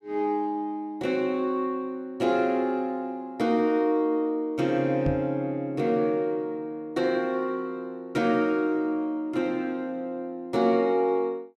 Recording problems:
microphone bump; at 5 s; peak +1 dB vs average level

